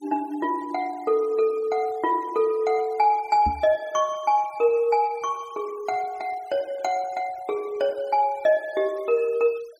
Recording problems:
noise reduction artefacts; signal-to-artefact ratio 27 dB
microphone bump; at 3.5 s; peak -3 dB vs average level

